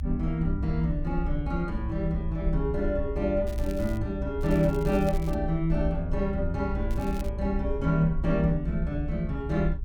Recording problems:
rumble; below 62 Hz, SNR 5 dB
crackle; at 3.5 s, at 4.5 s and at 7 s; loose cable, SNR 21 dB

